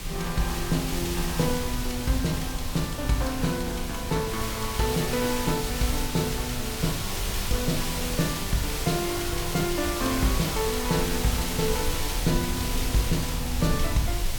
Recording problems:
mains hum; 50 Hz, harmonics up to 1.1 kHz, SNR 25 dB
hiss; slope -1 dB per octave, SNR 3 dB
low-frequency rumble; below 74 Hz, SNR 7 dB

